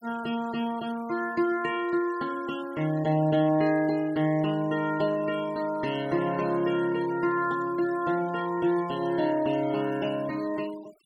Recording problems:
noise reduction artefacts; signal-to-artefact ratio 21 dB

